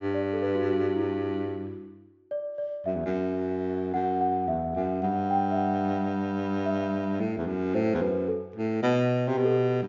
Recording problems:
treble cut off; nothing above 7.5 kHz

